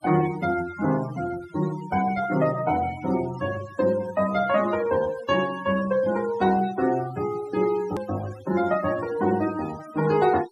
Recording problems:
noise reduction artefacts; signal-to-artefact ratio 16 dB
edit click; at 8 s

